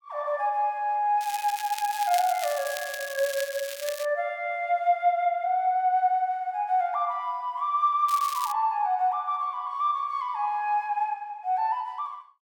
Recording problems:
crackle; from 1 to 4 s and at 8 s; loose cable, SNR 11 dB

